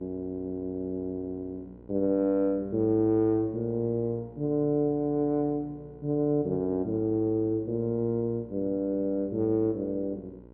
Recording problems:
hum; 60 Hz, harmonics up to 1 kHz, SNR 22 dB

